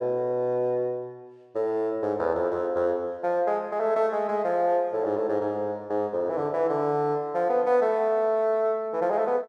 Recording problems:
none

